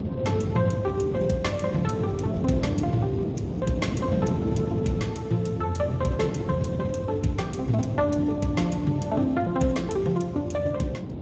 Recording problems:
lossy codec; Speex, log-spectral distance 3 dB, nothing above 7.3 kHz
wind on the microphone; below 310 Hz, SNR 4 dB

